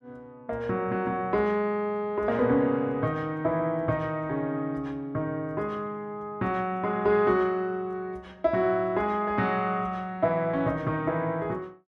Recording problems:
none

